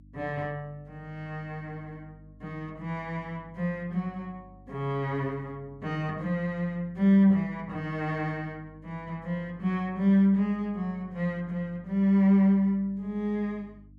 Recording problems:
hum; 50 Hz, harmonics up to 300 Hz, SNR 25 dB

